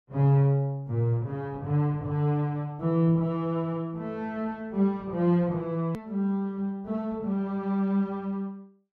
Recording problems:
hard cut with a click; at 6 s

